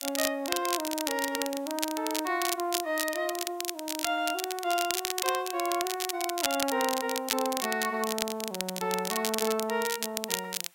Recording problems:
background hiss; SNR 26 dB
crackle; vinyl, SNR 2 dB

